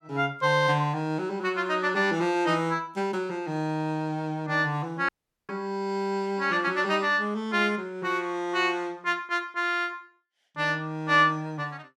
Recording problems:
dropout; at 5 s

